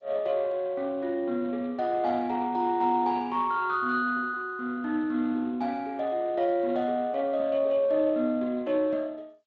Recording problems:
lossy compression; G.722, then Speex, log-spectral distance 3 dB

